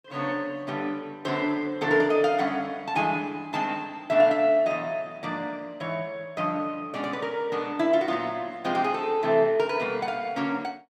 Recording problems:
none

